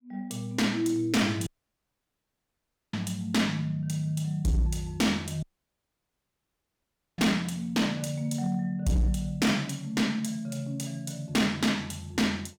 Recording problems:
distortion; hard clipping, uneven, signal-to-distortion ratio 11 dB
dropout; at 1.5 s for 1.5 s and at 5.5 s for 2 s

